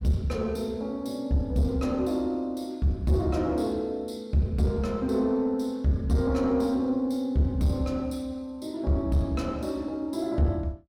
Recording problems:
distorted audio; soft clipping, signal-to-distortion ratio 11 dB

